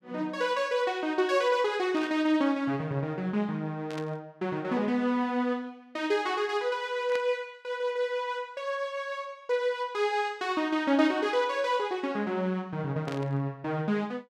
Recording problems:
static burst; 4 times, first at 2 s; peak -8 dB vs average level

